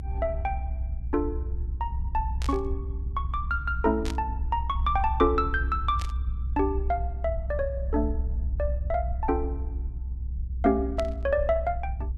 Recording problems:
low-frequency rumble; below 64 Hz, strongest tone 62 Hz, SNR 3 dB
burst of static; 4 times, first at 2.5 s; peak -5 dB vs average level

